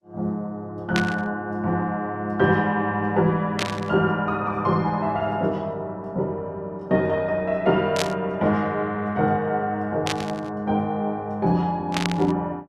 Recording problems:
codec artefacts; Opus, log-spectral distance 2 dB
burst of static; 5 times, first at 1 s; peak +3 dB vs average level

